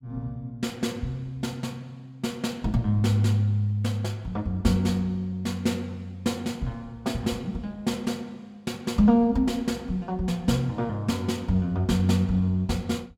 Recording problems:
none

